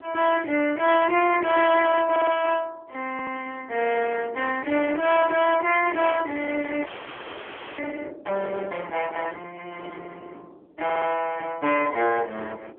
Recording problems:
telephone audio; 260 Hz to 3.5 kHz, AMR-NB
distorted audio; hard clipping, signal-to-distortion ratio 14 dB
wind on the microphone; below 1.7 kHz, SNR 20 dB
stutter; at 2 s, at 3 s and at 11 s
frozen audio; at 7 s for 1 s

